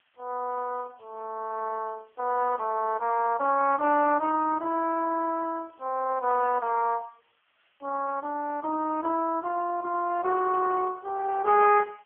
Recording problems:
phone line; 260 Hz to 2.7 kHz, AMR-NB
hiss; SNR 40 dB

